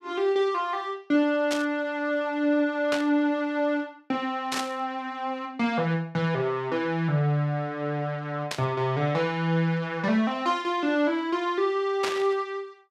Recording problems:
static burst; 5 times, first at 1.5 s; peak +1 dB vs average level

